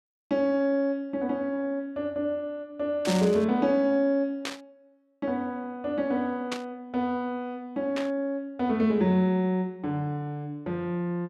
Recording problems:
static burst; 4 times, first at 3 s; peak -1 dB vs average level

